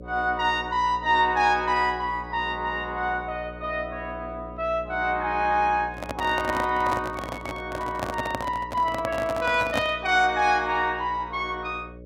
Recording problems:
mains hum; 60 Hz, harmonics up to 600 Hz, SNR 16 dB
microphone handling noise; from 6 to 10 s; peak +2 dB vs average level

